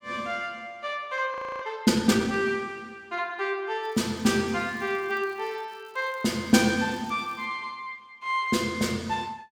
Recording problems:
frozen audio; at 1.5 s
crackling; from 4 to 7.5 s; loose cable, SNR 29 dB

